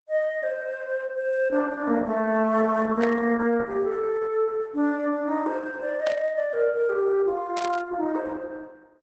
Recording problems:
lossy codec; Opus, log-spectral distance 2 dB, nothing above 7.8 kHz
static burst; at 3 s, at 6 s and at 7.5 s; peak -6 dB vs average level

